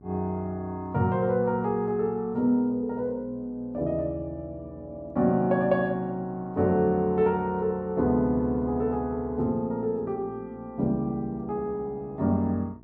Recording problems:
hum; 60 Hz, harmonics up to 780 Hz, SNR 23 dB

